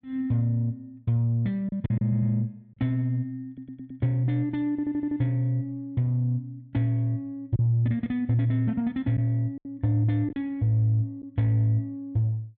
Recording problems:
packet loss; 2% of the sound replaced, filled with silence
audio stuttering; at 2 s, at 3.5 s and at 4.5 s

